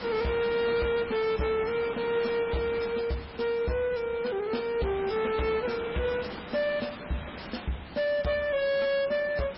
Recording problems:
codec artefacts; MP3, log-spectral distance 8 dB, nothing above 5.5 kHz
distortion; hard clipping, signal-to-distortion ratio 10 dB
hiss; SNR 12 dB

